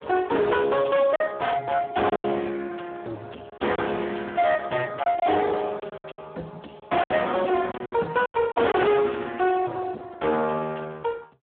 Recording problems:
phone line; 280 Hz to 3.7 kHz, Speex
distorted audio; hard clipping, signal-to-distortion ratio 6 dB
lost packets; 6% of the sound replaced, filled with silence

